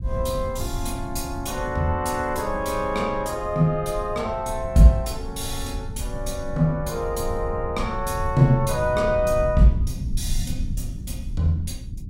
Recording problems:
rumble; below 110 Hz, SNR 9 dB

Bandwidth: 16 kHz